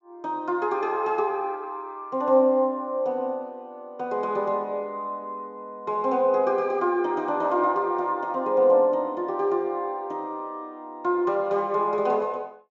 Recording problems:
treble missing; nothing above 7.5 kHz

